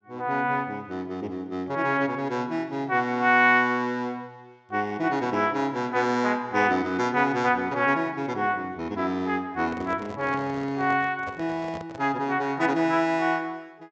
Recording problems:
treble cut off; nothing above 8 kHz
microphone handling noise; from 9.5 to 12 s; peak -10 dB vs average level

